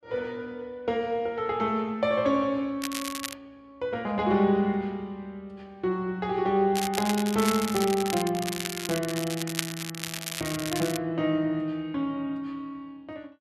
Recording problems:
crackle; at 3 s, from 6.5 to 10 s and from 10 to 11 s; loose cable, SNR 6 dB

